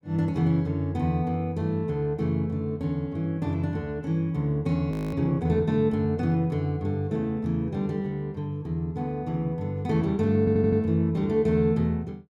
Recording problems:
audio freezing; at 5 s
stutter; at 10 s

